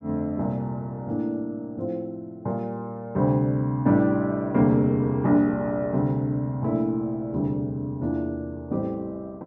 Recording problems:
none

